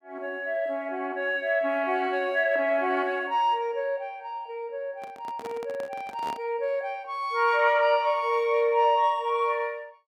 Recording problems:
microphone handling noise; from 5 to 6.5 s; peak -8 dB vs average level

